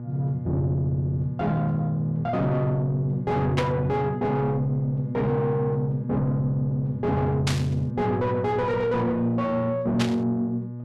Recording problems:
distorted audio; soft clipping, signal-to-distortion ratio 7 dB
hum; 60 Hz, harmonics up to 600 Hz, SNR 10 dB
static burst; at 3.5 s, at 7.5 s and at 10 s; peak +2 dB vs average level

